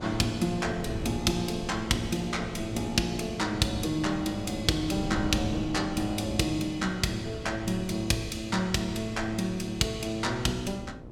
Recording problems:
hum; 60 Hz, harmonics up to 1.3 kHz, SNR 15 dB
wind on the microphone; below 250 Hz, SNR 12 dB

